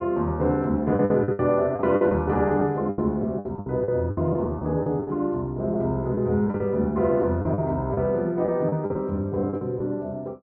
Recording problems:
packet loss; 12% of the sound replaced, filled with the last packet

